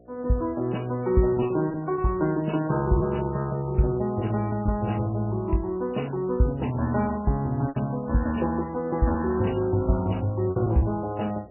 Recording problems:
lossy codec; MP3, log-spectral distance 2 dB, nothing above 2.9 kHz
electrical hum; 60 Hz, harmonics up to 720 Hz, SNR 26 dB
lost packets; 4% of the sound replaced, filled with repeated pitch periods

